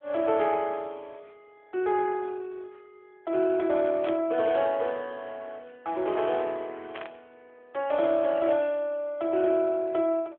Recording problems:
phone line; 300 Hz to 3.6 kHz, AMR-NB
burst of static; at 4 s and at 7 s; peak -8 dB vs average level

